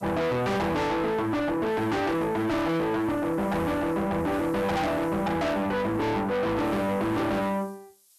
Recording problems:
distorted audio; soft clipping, signal-to-distortion ratio 6 dB
background hiss; SNR 27 dB

